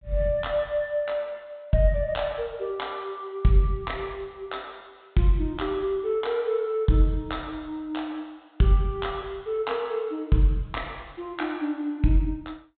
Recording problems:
treble missing; nothing above 4 kHz

